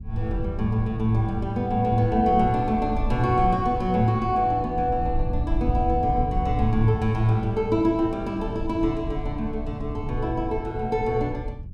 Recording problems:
rumble; below 90 Hz, SNR 8 dB

